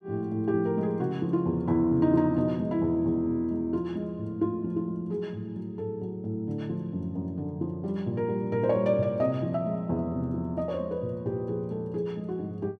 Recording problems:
none

